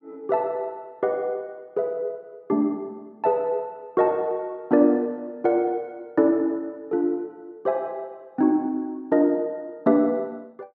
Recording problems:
none

